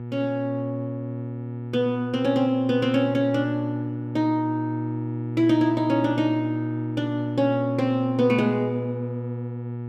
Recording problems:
hum; 60 Hz, harmonics up to 960 Hz, SNR 7 dB

